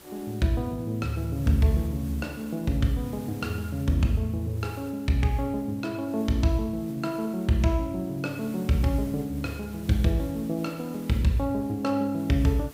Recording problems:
hiss; slope -4 dB per octave, SNR 21 dB

